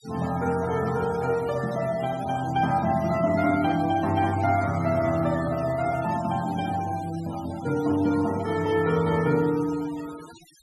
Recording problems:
denoising artefacts; signal-to-artefact ratio 18 dB

